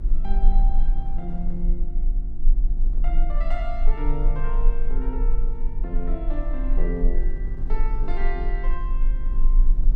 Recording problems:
electrical hum; 50 Hz, harmonics up to 350 Hz, SNR 3 dB
rumble; below 30 Hz, strongest tone 18 Hz, SNR -9 dB
wind noise; below 130 Hz, SNR 7 dB

